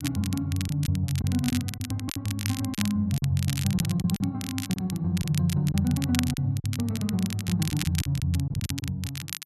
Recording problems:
crackling; vinyl, SNR 9 dB
lost packets; 7% of the sound replaced, filled with silence

